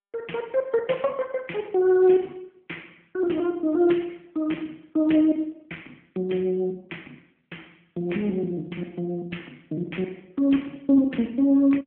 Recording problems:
telephone audio; 170 Hz to 3.4 kHz, AMR-NB

